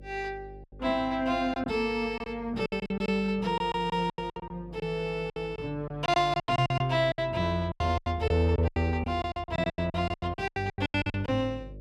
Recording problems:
hum; 50 Hz, harmonics up to 600 Hz, SNR 19 dB
lost packets; 17% of the sound replaced, filled with silence

